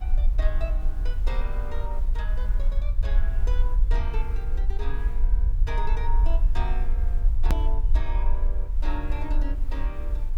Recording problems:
hiss; slope -6 dB per octave, SNR 15 dB
rumble; below 46 Hz, SNR -11 dB
edit click; at 7.5 s

